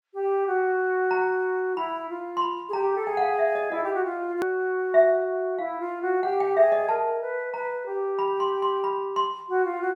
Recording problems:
click at an edit; at 4.5 s

